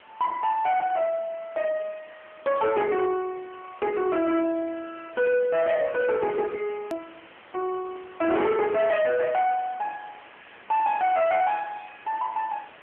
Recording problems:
phone line; 190 Hz to 3 kHz, AMR-NB
distorted audio; soft clipping, signal-to-distortion ratio 10 dB
background hiss; SNR 22 dB
hard cut with a click; at 7 s

